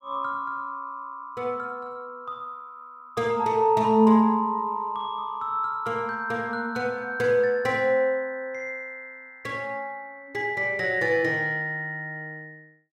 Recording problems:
none

